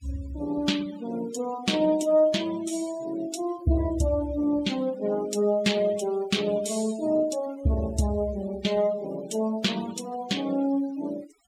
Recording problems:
denoising artefacts; signal-to-artefact ratio 18 dB

